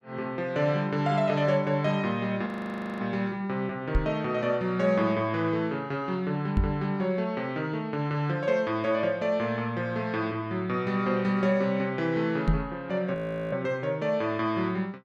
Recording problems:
audio freezing; at 2.5 s for 0.5 s and at 13 s
microphone bump; at 4 s, at 6.5 s and at 12 s; peak +7 dB vs average level

